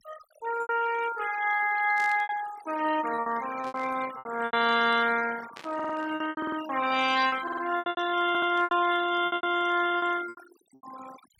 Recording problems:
denoising artefacts; signal-to-artefact ratio 13 dB
packet loss; 13% of the sound replaced, filled with repeated pitch periods
burst of static; 4 times, first at 2 s; peak -13 dB vs average level
stutter; 4 times, first at 5.5 s

